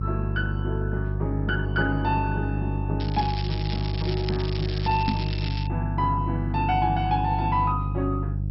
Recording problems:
lossy codec; MP2, log-spectral distance 5 dB, nothing above 4.6 kHz
electrical hum; 50 Hz, harmonics up to 350 Hz, SNR 0 dB
crackle; from 3 to 5.5 s; loose cable, SNR 9 dB
knock on the microphone; at 5 s; peak +5 dB vs average level

